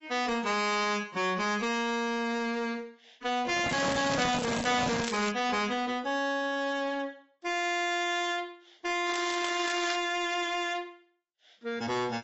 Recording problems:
codec artefacts; AAC, log-spectral distance 6 dB, nothing above 7.6 kHz
distortion; soft clipping, signal-to-distortion ratio 6 dB
microphone handling noise; from 3.5 to 5 s; peak +2 dB vs average level
crackling; from 3.5 to 5.5 s and at 9 s; loose cable, SNR 7 dB

